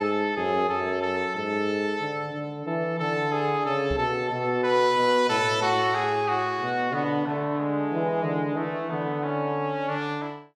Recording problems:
knock on the microphone; at 4 s; peak -4 dB vs average level

